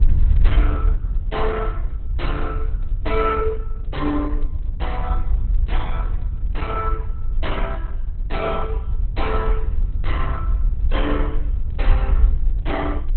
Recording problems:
codec artefacts; Opus, log-spectral distance 2 dB, nothing above 4 kHz
wind on the microphone; below 58 Hz, SNR -3 dB

